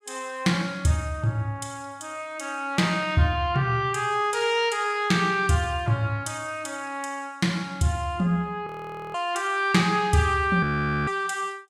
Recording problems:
audio freezing; at 8.5 s and at 11 s

